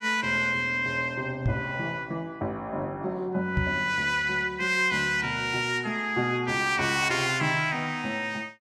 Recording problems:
microphone bump; at 1.5 s and at 3.5 s; peak +2 dB vs average level

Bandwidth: 15 kHz